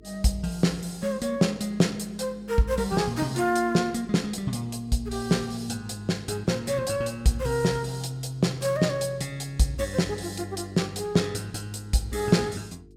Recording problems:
electrical hum; 50 Hz, harmonics up to 450 Hz, SNR 25 dB

